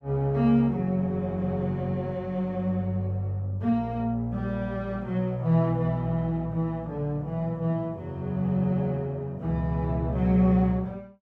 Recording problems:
none

